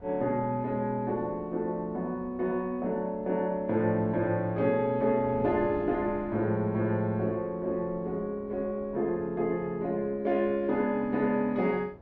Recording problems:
wind noise; below 470 Hz, SNR 20 dB

